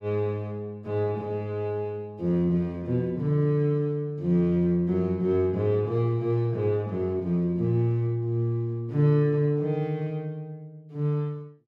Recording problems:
none

